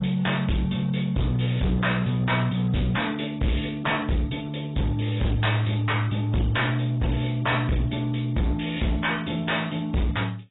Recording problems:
codec artefacts; AAC, log-spectral distance 6 dB, nothing above 3.8 kHz
distortion; hard clipping, signal-to-distortion ratio 8 dB

